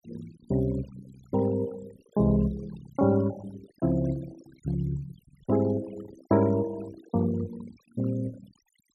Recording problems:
noise reduction artefacts; signal-to-artefact ratio 19 dB

